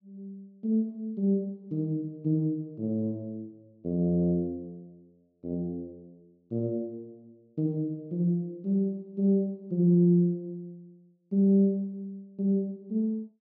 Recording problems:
none

